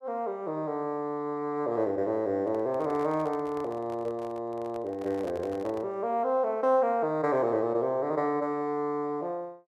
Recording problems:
handling noise; from 2.5 to 6 s; peak -10 dB vs average level

